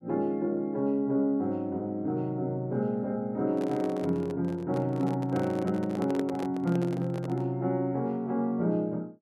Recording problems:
handling noise; from 3.5 to 7.5 s; peak -2 dB vs average level

